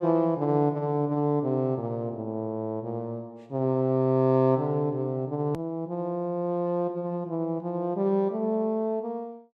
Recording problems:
hard cut with a click; at 5.5 s

